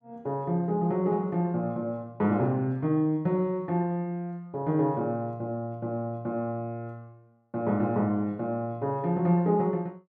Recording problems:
none

